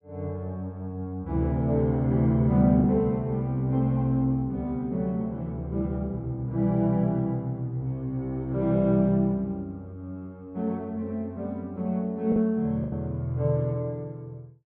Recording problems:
packet loss; 1.1% of the sound replaced, filled with the last packet

